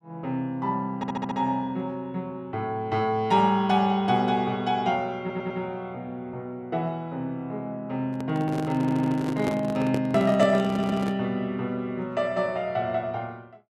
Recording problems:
stutter; 4 times, first at 1 s
handling noise; from 8 to 11 s; peak +1 dB vs average level

